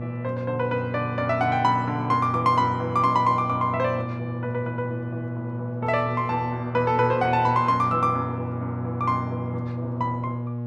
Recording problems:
hum; 60 Hz, harmonics up to 840 Hz, SNR 6 dB

